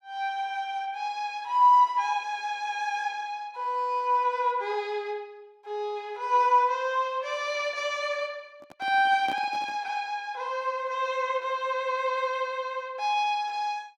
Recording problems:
microphone handling noise; from 8.5 to 10 s; peak -8 dB vs average level

